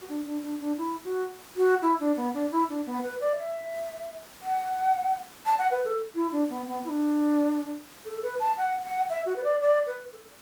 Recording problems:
hiss; slope -3 dB per octave, SNR 20 dB

